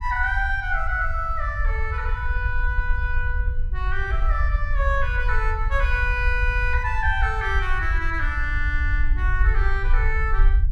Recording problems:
low-frequency rumble; below 60 Hz, SNR 0 dB

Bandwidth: 14.5 kHz